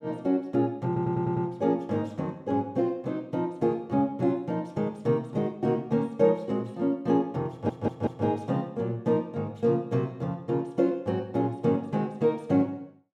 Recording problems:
stutter; at 1 s and at 7.5 s

